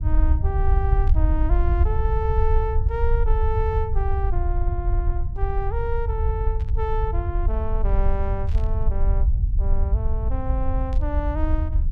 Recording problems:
low-frequency rumble; below 68 Hz, SNR -6 dB
static burst; 4 times, first at 1 s; peak -13 dB vs average level

